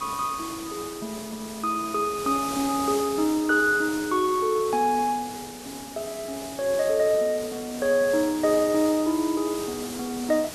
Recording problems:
hiss; SNR 12 dB

